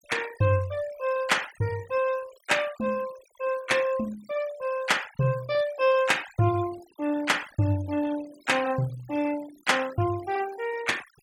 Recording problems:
noise reduction artefacts; signal-to-artefact ratio 17 dB

